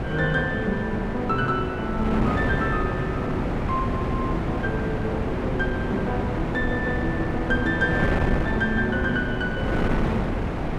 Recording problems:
wind noise; below 550 Hz, SNR 0 dB

